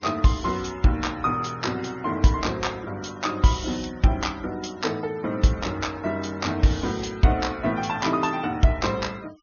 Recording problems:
low-pass filter; nothing above 6.6 kHz
noise reduction artefacts; signal-to-artefact ratio 23 dB

